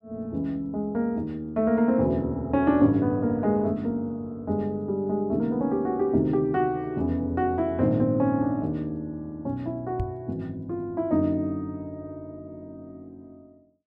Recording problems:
microphone thump; at 10 s; peak 0 dB vs average level

